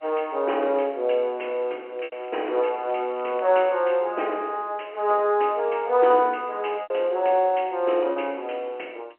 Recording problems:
telephone audio; 280 Hz to 3.2 kHz, G.711
lost packets; 2% of the sound replaced, filled with repeated pitch periods
crackling; from 2 to 4 s; loose cable, SNR 27 dB

